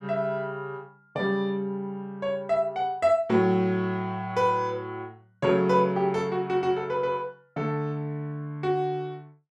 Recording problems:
none

